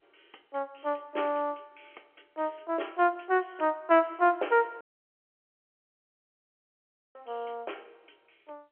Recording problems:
telephone audio; 300 Hz to 3.2 kHz, G.711
dropout; at 5 s for 2.5 s

